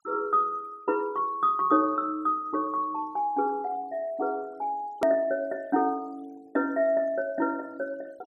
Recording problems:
denoising artefacts; signal-to-artefact ratio 28 dB
edit click; at 5 s

